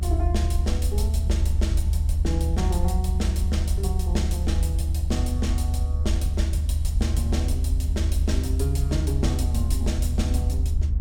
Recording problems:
low-frequency rumble; below 76 Hz, strongest tone 74 Hz, SNR -7 dB

